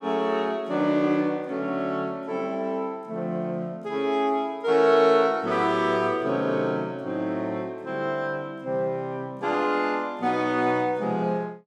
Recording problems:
none

